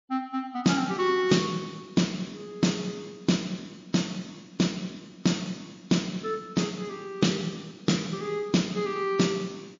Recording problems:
codec artefacts; MP3, log-spectral distance 4 dB, nothing above 6.9 kHz

